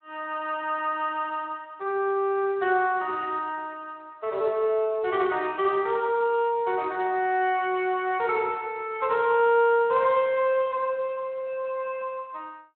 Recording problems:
telephone audio; 320 Hz to 3.4 kHz, Speex

